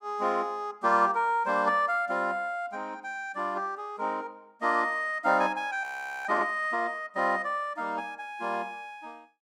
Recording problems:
audio freezing; at 6 s

